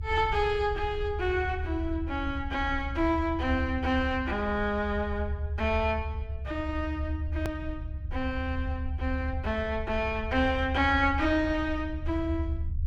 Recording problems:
rumble; below 78 Hz, SNR 5 dB
click at an edit; at 7.5 s

